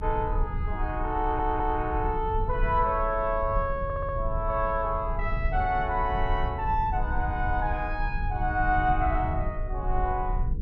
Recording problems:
mains hum; 60 Hz, harmonics up to 480 Hz, SNR 19 dB
low-frequency rumble; below 76 Hz, strongest tone 32 Hz, SNR 5 dB
audio stuttering; at 1 s and at 4 s

